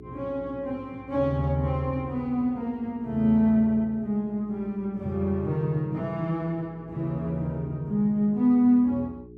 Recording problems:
hum; 60 Hz, harmonics up to 420 Hz, SNR 21 dB

